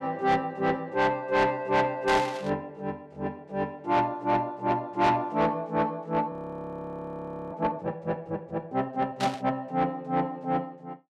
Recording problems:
distorted audio; soft clipping, signal-to-distortion ratio 10 dB
burst of static; at 2 s and at 9 s; peak -1 dB vs average level
frozen audio; at 6.5 s for 1 s

